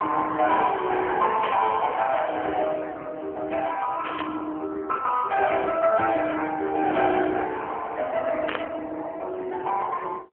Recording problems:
phone line; 280 Hz to 2.3 kHz, AMR-NB
burst of static; at 1.5 s, at 4 s and at 8.5 s; peak +1 dB vs average level

